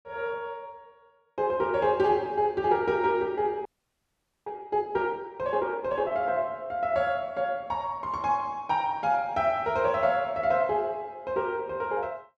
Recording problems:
audio freezing; at 3.5 s for 1 s

